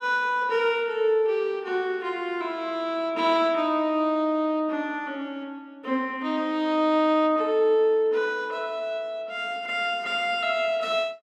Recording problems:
none

